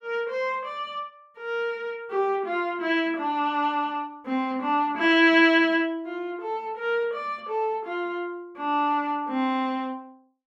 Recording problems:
none

